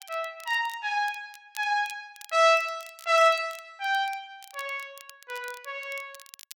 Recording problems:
crackling; vinyl, SNR 22 dB

